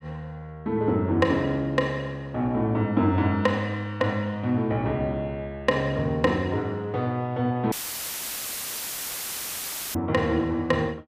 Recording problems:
audio cutting out; at 7.5 s for 2 s; filled with static

